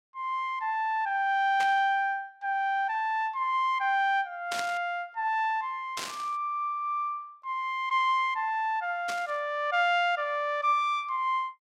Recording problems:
static burst; 4 times, first at 1.5 s; peak -2 dB vs average level

